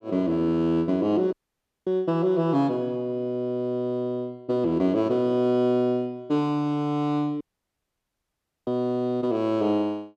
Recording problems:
dropout; at 1.5 s for 0.5 s and at 7.5 s for 1.5 s

